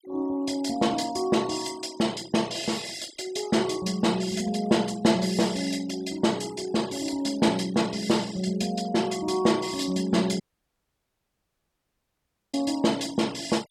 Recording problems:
denoising artefacts; signal-to-artefact ratio 19 dB
dropout; at 10 s for 2 s

